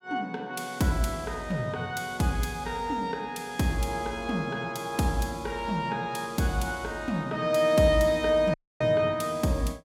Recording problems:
audio cutting out; at 8.5 s

